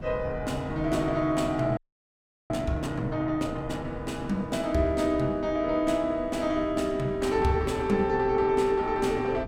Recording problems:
wind on the microphone; below 200 Hz, SNR 16 dB
frozen audio; at 2 s for 0.5 s

